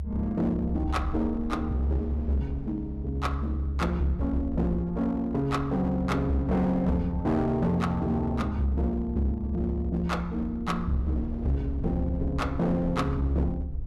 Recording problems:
distortion; hard clipping, uneven, signal-to-distortion ratio 9 dB
low-frequency rumble; below 72 Hz, strongest tone 70 Hz, SNR 6 dB
wind on the microphone; below 380 Hz, SNR 21 dB

